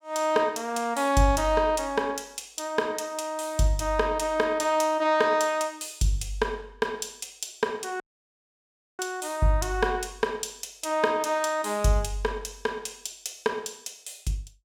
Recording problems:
audio cutting out; at 8 s for 1 s

